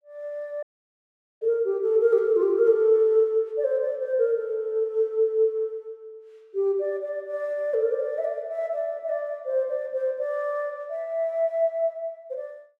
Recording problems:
audio cutting out; at 0.5 s for 1 s

